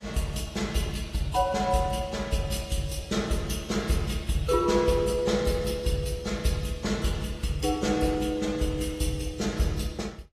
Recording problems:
lossy codec; AAC, log-spectral distance 4 dB, nothing above 12.7 kHz

